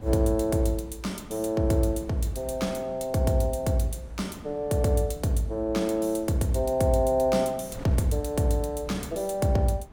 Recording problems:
wind on the microphone; below 350 Hz, SNR 21 dB

